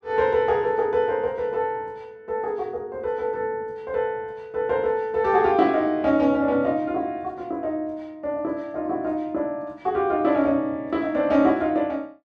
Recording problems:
none

